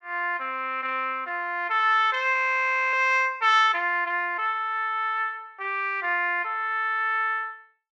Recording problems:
frozen audio; at 2.5 s for 0.5 s

